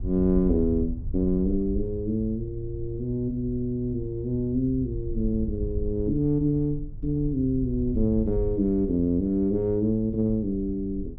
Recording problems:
wind on the microphone; below 74 Hz, SNR 10 dB

